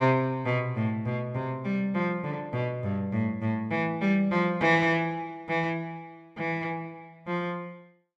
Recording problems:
none

